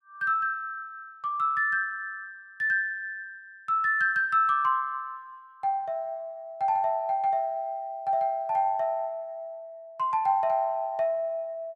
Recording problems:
none

